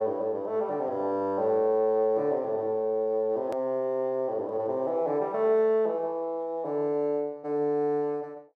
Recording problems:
click at an edit; at 3.5 s

